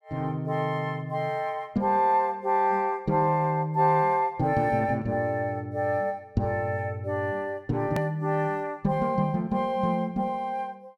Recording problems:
click at an edit; at 8 s

